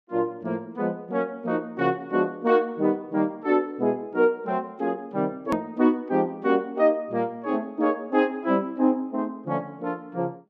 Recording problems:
edit click; at 5.5 s

